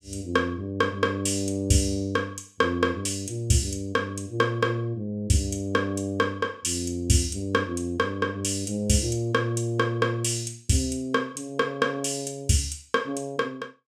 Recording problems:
none

